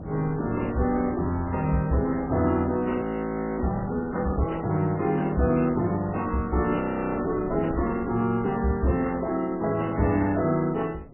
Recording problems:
lossy codec; MP3, log-spectral distance 3 dB, nothing above 2.9 kHz
wind noise; below 330 Hz, SNR 17 dB
audio freezing; at 3 s for 0.5 s and at 7 s

